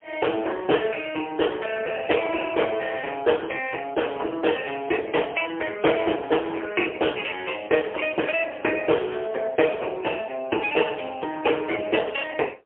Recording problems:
telephone audio; 280 Hz to 3.3 kHz, AMR-NB, then MP3

